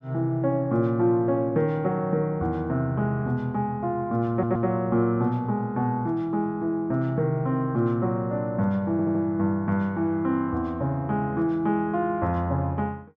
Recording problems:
audio stuttering; at 4.5 s and at 9 s

